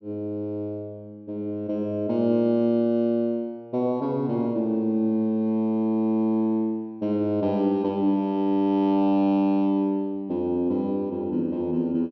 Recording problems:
treble cut off; nothing above 5.9 kHz

